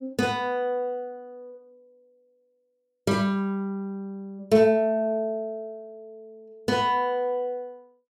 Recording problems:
none

